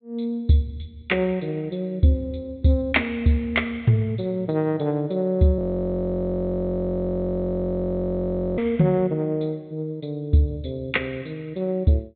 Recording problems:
low-pass filter; nothing above 4 kHz
audio freezing; at 5.5 s for 3 s

